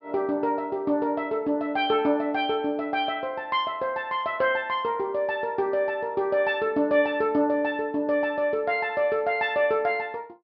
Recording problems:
low-pass filter; nothing above 5.5 kHz

